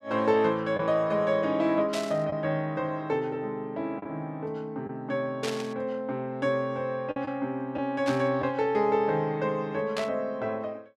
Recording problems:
packet loss; 1.8% of the sound replaced, filled with the last packet
burst of static; 4 times, first at 2 s; peak -2 dB vs average level

